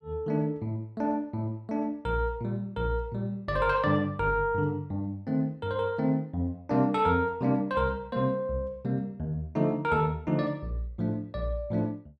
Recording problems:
none

